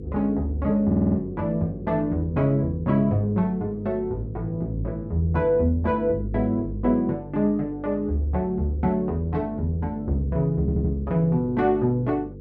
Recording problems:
hum; 50 Hz, harmonics up to 500 Hz, SNR 14 dB
audio stuttering; at 1 s and at 11 s

